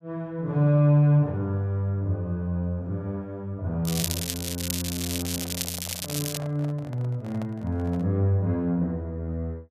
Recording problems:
crackling; from 4 to 6.5 s; loose cable, SNR 4 dB
handling noise; from 5 to 8 s; peak -10 dB vs average level

